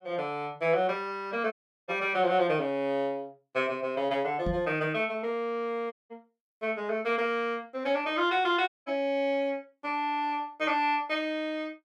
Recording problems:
audio cutting out; at 1.5 s, at 6 s and at 8.5 s
knock on the microphone; at 4.5 s; peak 0 dB vs average level

